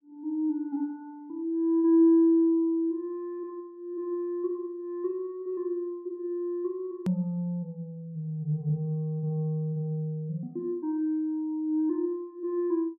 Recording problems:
click at an edit; at 7 s

